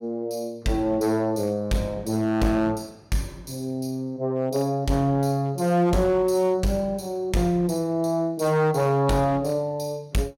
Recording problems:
distorted audio; hard clipping, signal-to-distortion ratio 12 dB

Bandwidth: 16 kHz